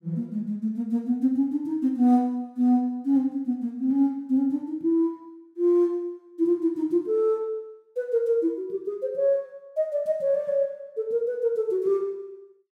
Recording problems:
none

